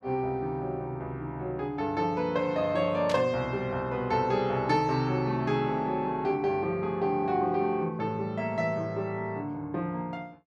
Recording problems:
static burst; at 3 s; peak -4 dB vs average level

